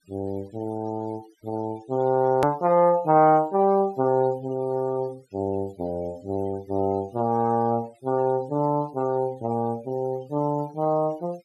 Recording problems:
noise reduction artefacts; signal-to-artefact ratio 27 dB
edit click; at 2.5 s

